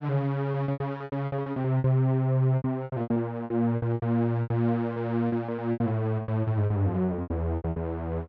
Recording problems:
packet loss; 19% of the sound replaced, filled with repeated pitch periods

